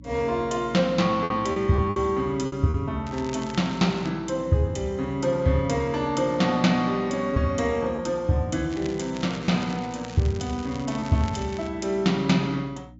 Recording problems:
treble missing; nothing above 7.6 kHz
hum; 60 Hz, harmonics up to 300 Hz, SNR 21 dB
lost packets; 3% of the sound replaced, filled with repeated pitch periods
crackle; from 3 to 4 s and from 8.5 to 12 s; loose cable, SNR 19 dB

